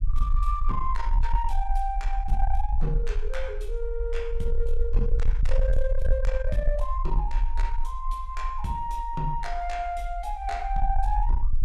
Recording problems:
distorted audio; soft clipping, signal-to-distortion ratio 10 dB
low-frequency rumble; below 44 Hz, strongest tone 20 Hz, SNR -2 dB

